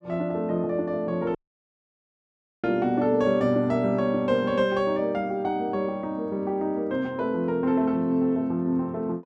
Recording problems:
audio cutting out; at 1.5 s for 1.5 s

